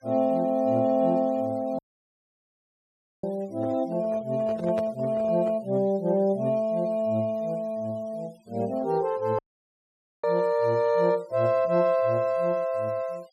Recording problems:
noise reduction artefacts; signal-to-artefact ratio 28 dB
dropout; at 2 s for 1.5 s and at 9.5 s for 1 s
handling noise; from 3.5 to 5.5 s; peak -4 dB vs average level

